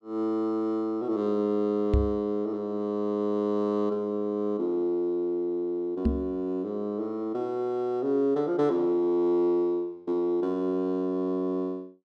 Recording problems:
microphone thump; at 2 s and at 6 s; peak +6 dB vs average level

